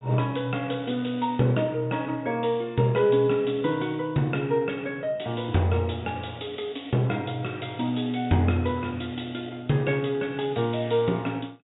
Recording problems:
low-pass filter; nothing above 4 kHz

